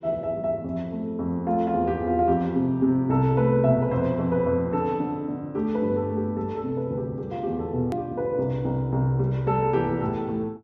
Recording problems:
low-pass filter; nothing above 8 kHz
click at an edit; at 8 s

